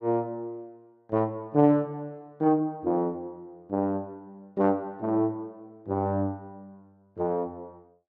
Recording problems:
none

